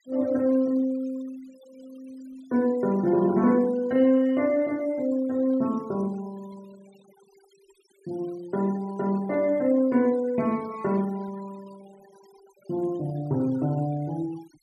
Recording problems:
noise reduction artefacts; signal-to-artefact ratio 26 dB

